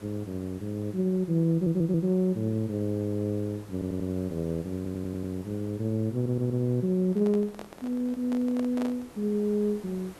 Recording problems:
hiss; slope -6 dB per octave, SNR 22 dB
stutter; 4 times, first at 1.5 s
handling noise; from 7 to 9 s; peak -5 dB vs average level

